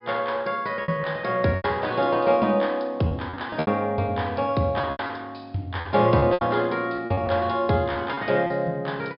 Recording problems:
treble missing; nothing above 5.5 kHz
lost packets; 8% of the sound replaced, filled with repeated pitch periods

